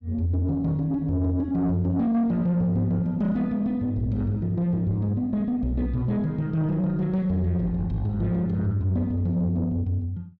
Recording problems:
distorted audio; soft clipping, signal-to-distortion ratio 11 dB

